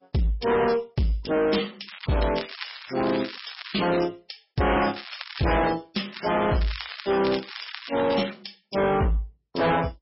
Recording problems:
lossy codec; MP3, log-spectral distance 14 dB, nothing above 5.5 kHz
distortion; hard clipping, signal-to-distortion ratio 8 dB
crackling; from 2 to 4 s, at 4.5 s and from 6 to 8.5 s; loose cable, SNR 11 dB

